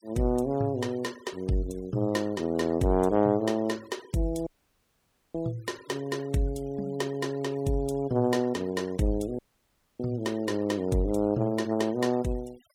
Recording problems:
denoising artefacts; signal-to-artefact ratio 25 dB
dropout; at 4.5 s for 1 s and at 9.5 s for 0.5 s

